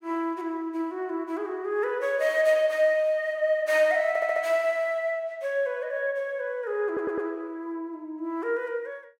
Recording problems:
audio stuttering; at 4 s and at 7 s

